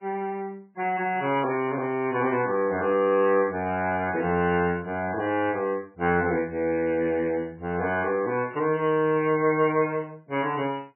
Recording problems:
lossy codec; MP3, log-spectral distance 3 dB, nothing above 2.9 kHz

